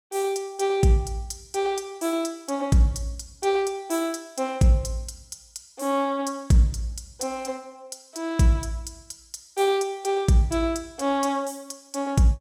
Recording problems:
none

